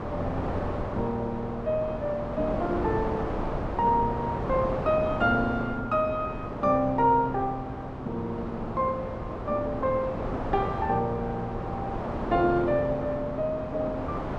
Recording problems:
wind on the microphone; below 810 Hz, SNR 5 dB

